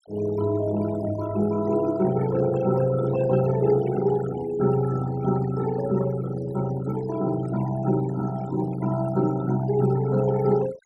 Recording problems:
denoising artefacts; signal-to-artefact ratio 16 dB

